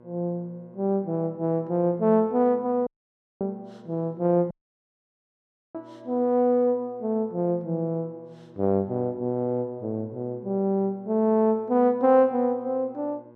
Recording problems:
mains hum; 60 Hz, harmonics up to 1.6 kHz, SNR 26 dB
dropout; at 3 s for 0.5 s and at 4.5 s for 1 s

